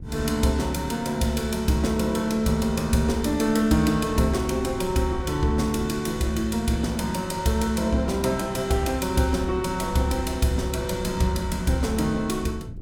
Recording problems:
wind on the microphone; below 150 Hz, SNR 15 dB

